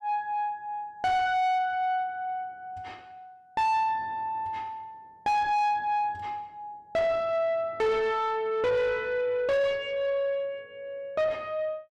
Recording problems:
distortion; soft clipping, signal-to-distortion ratio 5 dB

